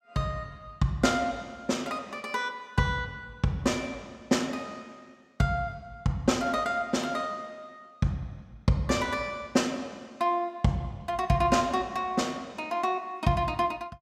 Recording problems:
none

